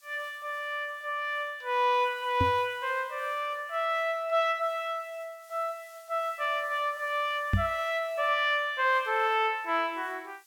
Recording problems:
background hiss; slope +4 dB per octave, SNR 28 dB
knock on the microphone; at 2.5 s and at 7.5 s; peak +6 dB vs average level

